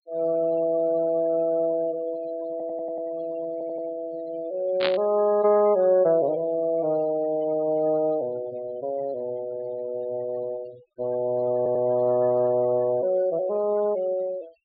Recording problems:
treble cut off; nothing above 4.6 kHz
denoising artefacts; signal-to-artefact ratio 22 dB
stutter; at 2.5 s, at 3.5 s and at 12 s
burst of static; at 5 s; peak +2 dB vs average level

